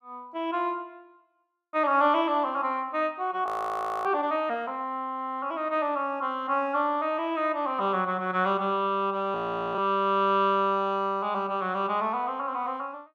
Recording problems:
audio freezing; at 3.5 s for 0.5 s and at 9.5 s

